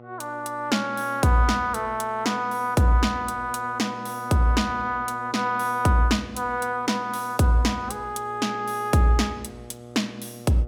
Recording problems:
electrical hum; 60 Hz, harmonics up to 1.3 kHz, SNR 19 dB

